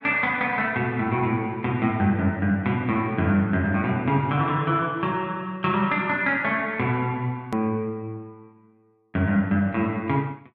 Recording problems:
click at an edit; at 7.5 s

